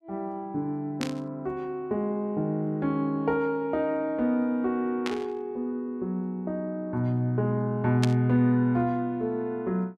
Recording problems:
static burst; at 1 s, at 5 s and at 8 s; peak 0 dB vs average level

